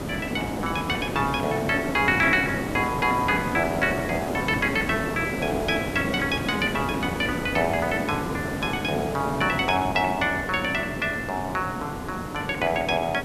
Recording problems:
hiss; slope -8 dB per octave, SNR 5 dB

